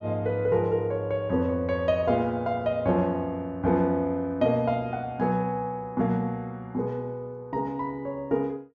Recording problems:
treble cut off; nothing above 7.8 kHz

